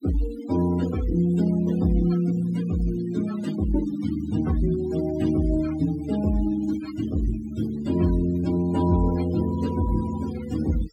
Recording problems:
denoising artefacts; signal-to-artefact ratio 16 dB

